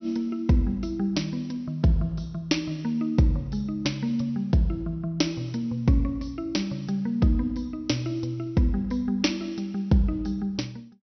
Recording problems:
low-pass filter; nothing above 6 kHz

